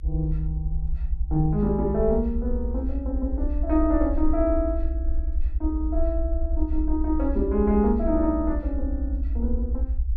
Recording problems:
rumble; below 60 Hz, SNR 2 dB

